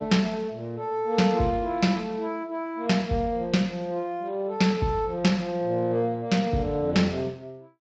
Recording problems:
lossy codec; Speex, log-spectral distance 2 dB, nothing above 7.3 kHz

